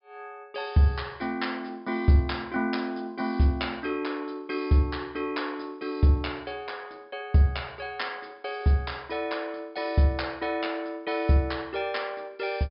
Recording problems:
low-pass filter; nothing above 5.5 kHz

